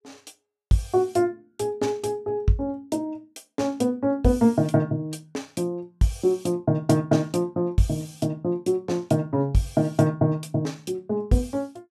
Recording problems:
none

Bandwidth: 14.5 kHz